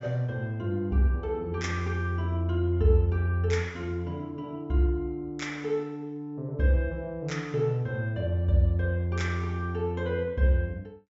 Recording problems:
low-pass filter; nothing above 8 kHz

